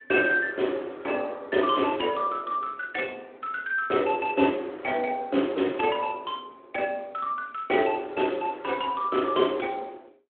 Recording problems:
phone line; 240 Hz to 3.4 kHz, Speex

